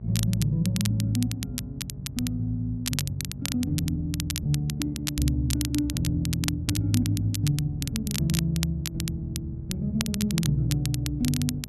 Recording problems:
hum; 60 Hz, harmonics up to 660 Hz, SNR 15 dB
crackling; vinyl, SNR 7 dB

